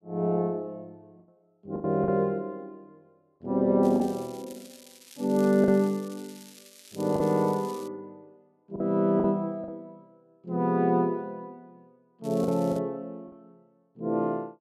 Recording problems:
lost packets; 5% of the sound replaced, filled with the last packet
crackle; from 4 to 8 s and at 12 s; loose cable, SNR 22 dB

